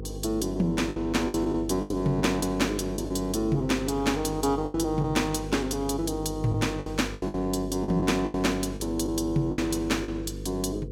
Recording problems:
hum; 50 Hz, harmonics up to 500 Hz, SNR 10 dB
lost packets; 9% of the sound replaced, filled with the last packet

